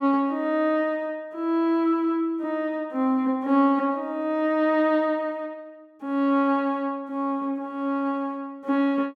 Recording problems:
none

